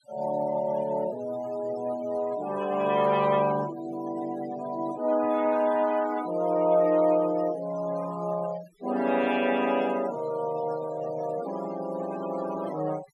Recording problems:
denoising artefacts; signal-to-artefact ratio 16 dB

